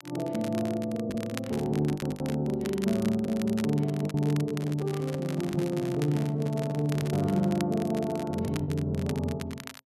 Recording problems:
crackle; vinyl, SNR 16 dB
lost packets; 5% of the sound replaced, filled with the last packet
microphone handling noise; from 4.5 to 7.5 s; peak -10 dB vs average level

